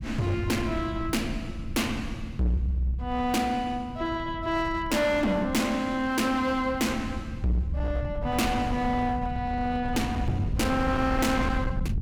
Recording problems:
distortion; hard clipping, uneven, signal-to-distortion ratio 8 dB
rumble; below 140 Hz, SNR 8 dB

